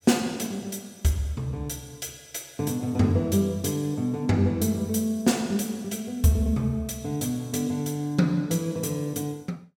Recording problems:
none

